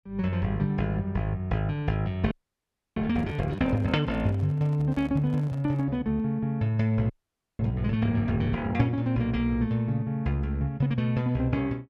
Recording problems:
frozen audio; at 2.5 s for 0.5 s and at 7 s
handling noise; from 3 to 6 s; peak -13 dB vs average level

